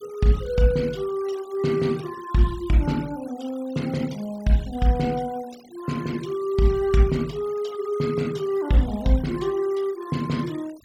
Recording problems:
denoising artefacts; signal-to-artefact ratio 21 dB

